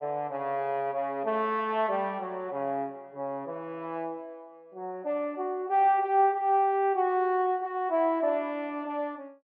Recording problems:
none

